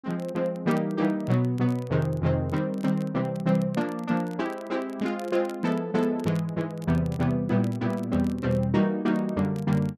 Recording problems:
crackle; vinyl, SNR 27 dB

